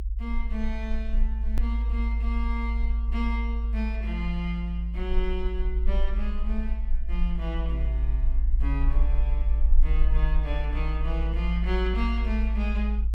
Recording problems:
low-frequency rumble; below 54 Hz, SNR -7 dB
edit click; at 1.5 s

